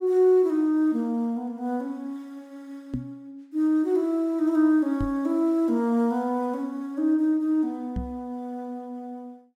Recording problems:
microphone thump; at 3 s, at 5 s and at 8 s; peak -2 dB vs average level

